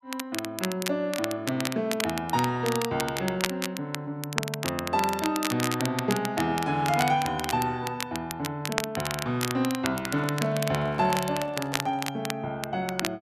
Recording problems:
crackle; vinyl, SNR 6 dB
microphone handling noise; from 10 to 12 s; peak -7 dB vs average level

